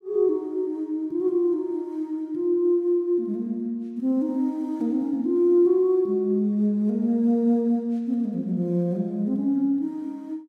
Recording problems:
none

